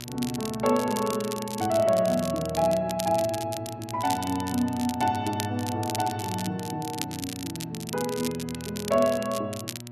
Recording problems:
hum; 60 Hz, harmonics up to 1.3 kHz, SNR 15 dB
crackling; vinyl, SNR 10 dB

